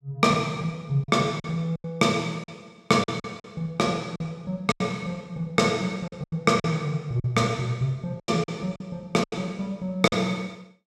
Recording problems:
lost packets; 9% of the sound replaced, filled with silence

